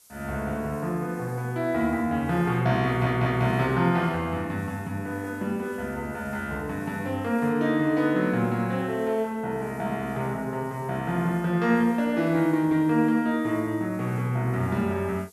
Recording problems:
hiss; SNR 27 dB
stutter; at 3 s

